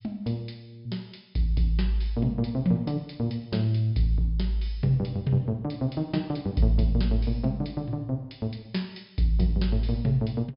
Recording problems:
treble missing; nothing above 5.5 kHz

